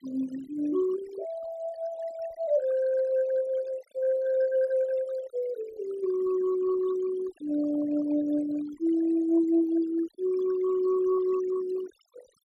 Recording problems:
noise reduction artefacts; signal-to-artefact ratio 19 dB

